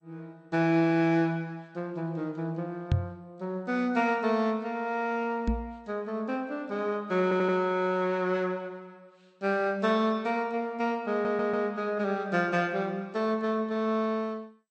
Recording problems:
codec artefacts; MP2, then MP3, log-spectral distance 2 dB
microphone thump; at 3 s and at 5.5 s; peak +6 dB vs average level
stutter; at 7 s and at 11 s

